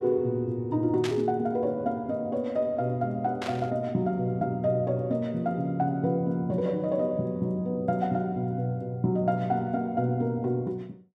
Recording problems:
static burst; at 1 s and at 3.5 s; peak -3 dB vs average level

